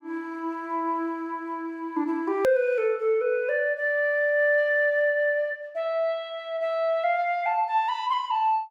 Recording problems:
edit click; at 2.5 s

